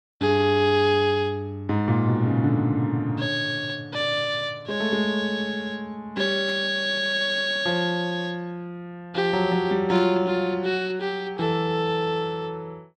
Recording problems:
burst of static; at 6.5 s and at 10 s; peak -13 dB vs average level

